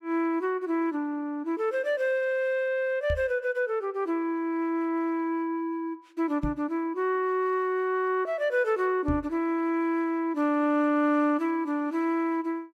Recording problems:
knock on the microphone; at 3 s, at 6.5 s and at 9 s; peak 0 dB vs average level

